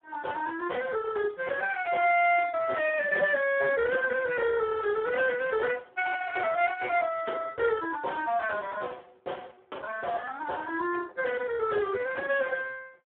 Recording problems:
telephone audio; 300 Hz to 2.2 kHz, Speex

